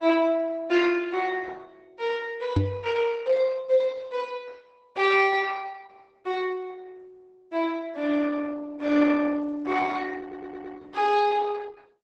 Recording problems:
lossy codec; Opus, log-spectral distance 4 dB
knock on the microphone; at 2.5 s; peak +6 dB vs average level
stutter; at 10 s

